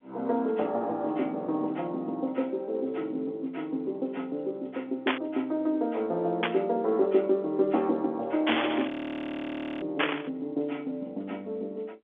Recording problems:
telephone audio; 240 Hz to 3.6 kHz, G.711
static burst; 4 times, first at 5 s; peak +7 dB vs average level
frozen audio; at 9 s for 1 s

